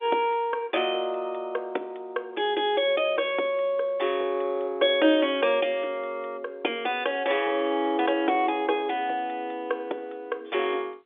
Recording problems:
phone line; 280 Hz to 3.5 kHz, G.711

